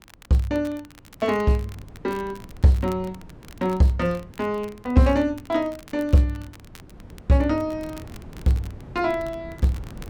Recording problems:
wind noise; below 270 Hz, SNR 20 dB
crackling; vinyl, SNR 25 dB

